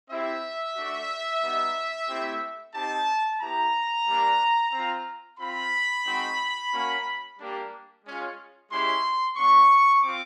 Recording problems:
none

